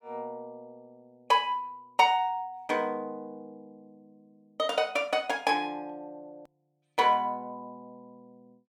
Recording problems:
hard cut with a click; at 6.5 s

